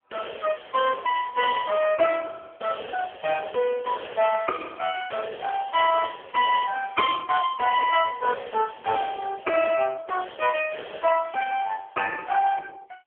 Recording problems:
phone line; 300 Hz to 3.1 kHz, AMR-NB

